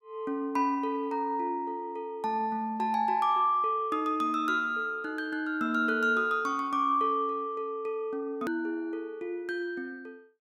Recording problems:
edit click; at 8.5 s

